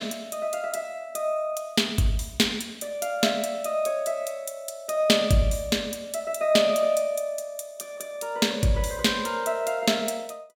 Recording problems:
none

